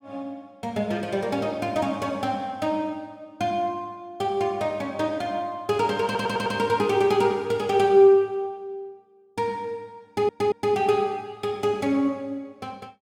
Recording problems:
audio stuttering; at 6 s and at 10 s

